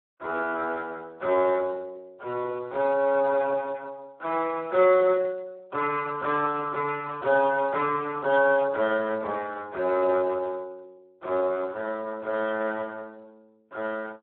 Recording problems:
telephone audio; 300 Hz to 2.7 kHz, Speex

